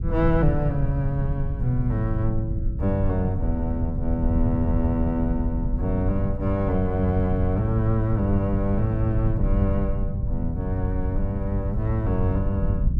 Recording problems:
low-frequency rumble; below 110 Hz, SNR 2 dB

